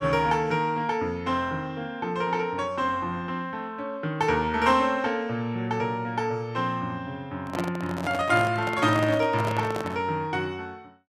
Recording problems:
microphone handling noise; from 7.5 to 10 s; peak -1 dB vs average level

